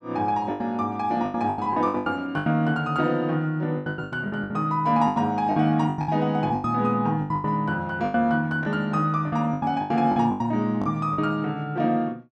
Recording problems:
packet loss; 15% of the sound replaced, filled with the last packet

